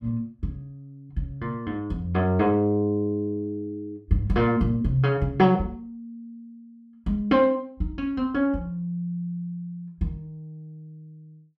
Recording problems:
none

